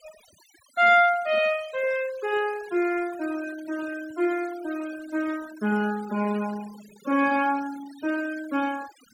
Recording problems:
denoising artefacts; signal-to-artefact ratio 20 dB

